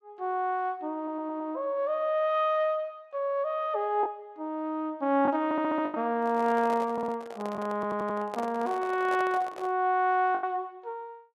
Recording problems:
packet loss; 2% of the sound replaced, filled with the last packet
audio stuttering; 4 times, first at 1 s
microphone handling noise; from 6 to 10 s; peak -5 dB vs average level

